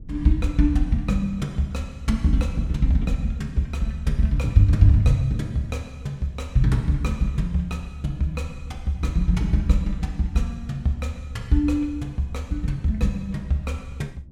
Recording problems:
low-frequency rumble; below 110 Hz, SNR 20 dB

